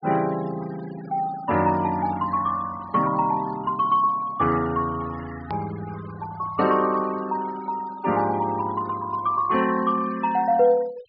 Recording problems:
treble missing; nothing above 5.5 kHz
noise reduction artefacts; signal-to-artefact ratio 19 dB
click at an edit; at 5.5 s

